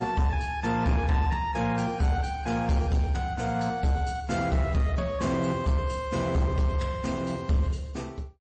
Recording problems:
lossy compression; MP3, log-spectral distance 2 dB, nothing above 8.2 kHz
distortion; soft clipping, signal-to-distortion ratio 11 dB

